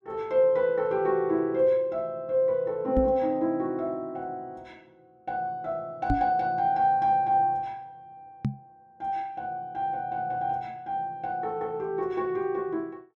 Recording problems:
microphone bump; at 3 s, at 6 s and at 8.5 s; peak +4 dB vs average level

